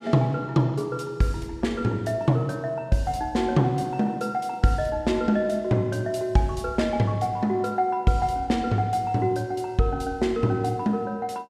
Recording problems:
none

